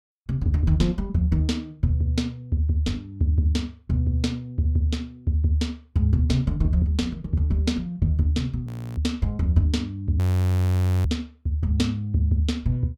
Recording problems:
frozen audio; at 8.5 s and at 10 s for 1 s

